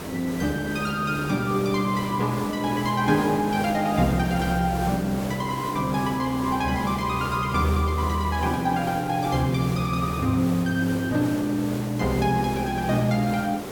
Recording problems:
background hiss; slope -6 dB per octave, SNR 10 dB

